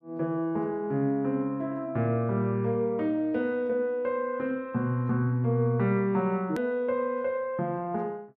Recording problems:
click at an edit; at 6.5 s

